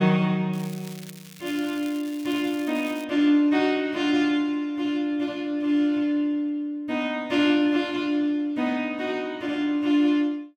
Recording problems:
crackling; from 0.5 to 3 s; loose cable, SNR 20 dB

